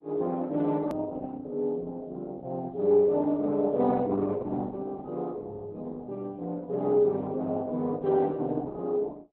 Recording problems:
codec artefacts; Opus, log-spectral distance 2 dB, nothing above 13.1 kHz
edit click; at 1 s

